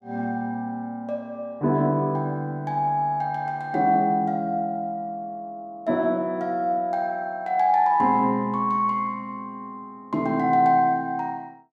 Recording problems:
none

